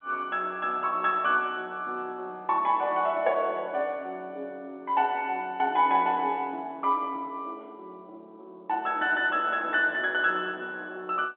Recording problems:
phone line; 260 Hz to 3.5 kHz, G.711

